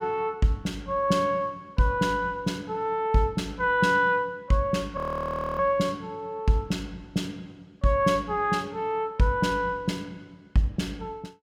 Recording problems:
frozen audio; at 5 s for 0.5 s

